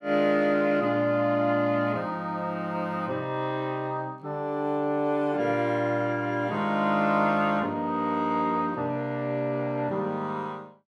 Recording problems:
none

